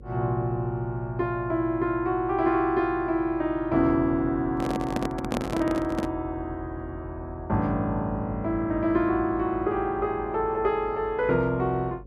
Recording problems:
hum; 50 Hz, harmonics up to 550 Hz, SNR 19 dB
microphone handling noise; from 4.5 to 6 s; peak +1 dB vs average level

